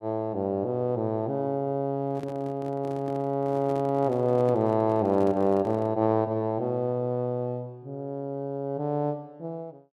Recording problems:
handling noise; from 2 to 6 s; peak -8 dB vs average level

